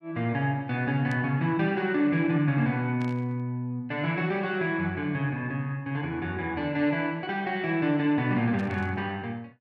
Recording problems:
static burst; at 1 s, at 3 s and at 8.5 s; peak -15 dB vs average level

